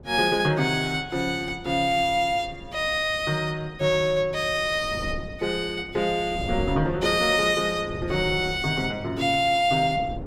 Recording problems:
wind noise; below 300 Hz, SNR 15 dB

